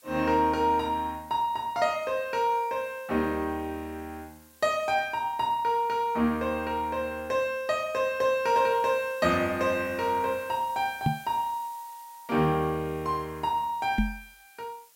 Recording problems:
background hiss; slope +1 dB per octave, SNR 26 dB
knock on the microphone; at 11 s and at 14 s; peak +5 dB vs average level

